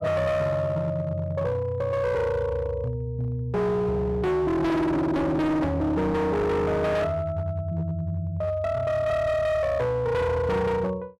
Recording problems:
distorted audio; hard clipping, signal-to-distortion ratio 7 dB

